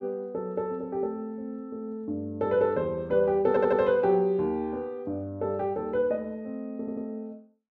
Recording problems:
stutter; at 3.5 s and at 7 s

